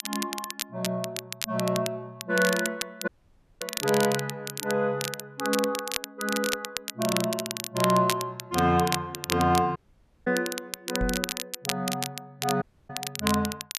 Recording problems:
crackling; vinyl, SNR 5 dB
dropout; at 3 s for 0.5 s, at 10 s for 0.5 s and at 13 s
knock on the microphone; at 11 s; peak 0 dB vs average level

